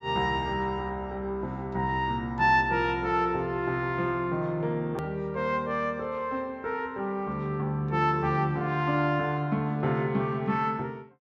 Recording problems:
treble cut off; nothing above 8 kHz
hard cut with a click; at 5 s

